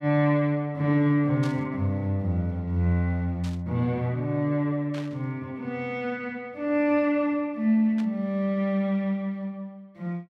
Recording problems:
static burst; 4 times, first at 1.5 s; peak -11 dB vs average level

